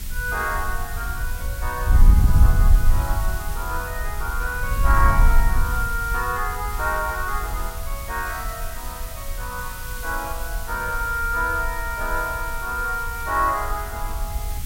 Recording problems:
background hiss; slope +1 dB per octave, SNR 10 dB
wind on the microphone; below 64 Hz, SNR -1 dB

